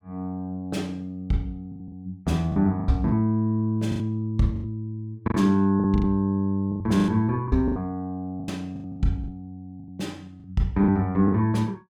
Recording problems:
packet loss; 12% of the sound replaced, filled with the last packet

